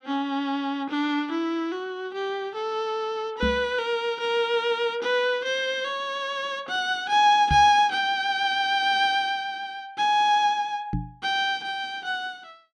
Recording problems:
microphone bump; at 3.5 s, at 7.5 s and at 11 s; peak +1 dB vs average level

